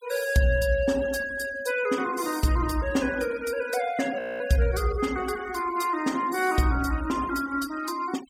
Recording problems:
denoising artefacts; signal-to-artefact ratio 17 dB
audio freezing; at 4 s

